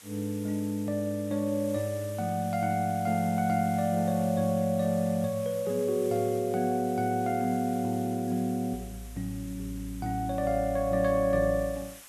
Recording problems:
background hiss; SNR 19 dB

